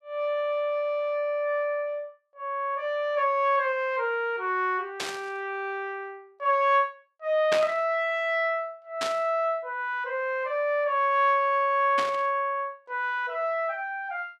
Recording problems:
burst of static; 4 times, first at 5 s; peak +2 dB vs average level

